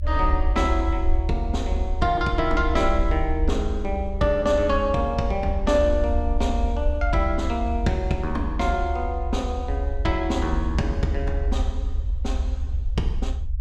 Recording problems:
low-frequency rumble; below 68 Hz, SNR 2 dB

